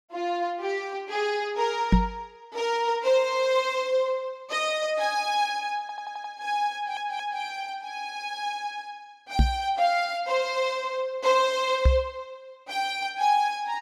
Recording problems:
microphone bump; at 2 s, at 9.5 s and at 12 s; peak +10 dB vs average level
stutter; at 6 s and at 6.5 s

